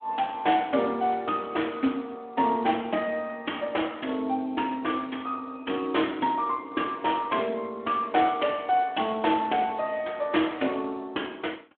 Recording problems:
phone line; 220 Hz to 3.6 kHz, Speex

